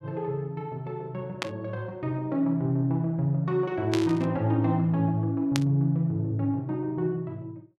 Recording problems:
static burst; at 1.5 s, at 4 s and at 5.5 s; peak +2 dB vs average level

